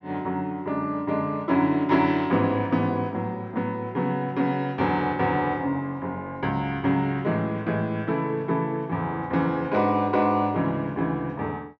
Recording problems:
low-pass filter; nothing above 8 kHz

